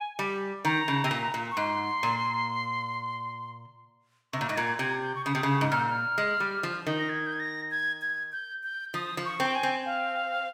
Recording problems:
none

